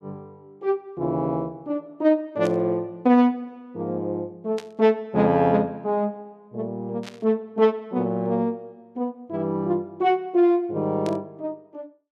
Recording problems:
burst of static; 4 times, first at 2.5 s; peak -10 dB vs average level

